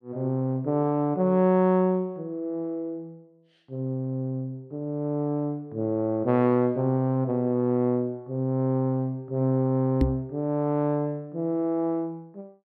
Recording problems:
microphone bump; at 10 s; peak +7 dB vs average level

